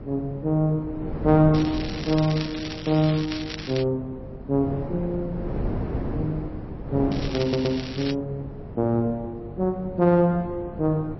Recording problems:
codec artefacts; MP3, log-spectral distance 4 dB
hum; 50 Hz, harmonics up to 450 Hz, SNR 20 dB
wind on the microphone; below 390 Hz, SNR 10 dB
crackling; from 1.5 to 4 s and at 7 s; loose cable, SNR 11 dB
stutter; at 7.5 s

